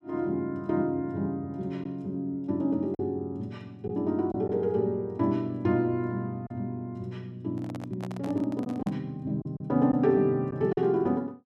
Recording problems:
lost packets; 2% of the sound replaced, filled with silence
microphone handling noise; from 7.5 to 9 s; peak -8 dB vs average level

